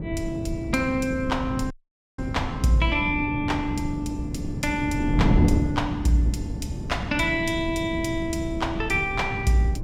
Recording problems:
wind noise; below 220 Hz, SNR 3 dB
audio cutting out; at 1.5 s

